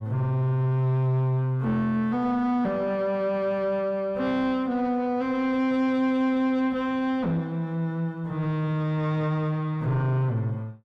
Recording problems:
distorted audio; soft clipping, signal-to-distortion ratio 10 dB

